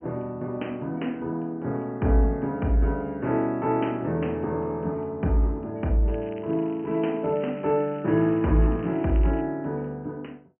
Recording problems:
treble cut off; nothing above 3 kHz
crackling; from 6 to 9.5 s; loose cable, SNR 27 dB

